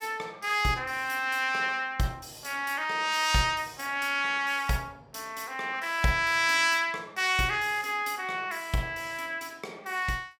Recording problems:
none

